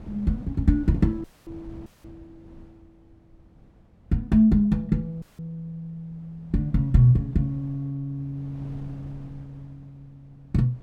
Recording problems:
wind on the microphone; below 220 Hz, SNR 23 dB
dropout; at 1 s, at 2 s and at 5 s

